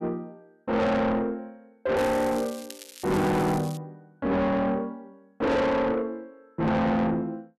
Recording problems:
distorted audio; soft clipping, signal-to-distortion ratio 6 dB
crackle; from 2 to 4 s; loose cable, SNR 17 dB

